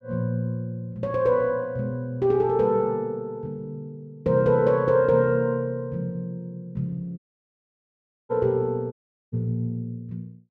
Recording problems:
audio cutting out; at 7 s for 1 s and at 9 s

